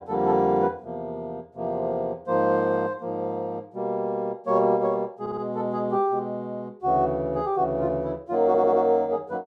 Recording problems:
stutter; at 5 s and at 8.5 s

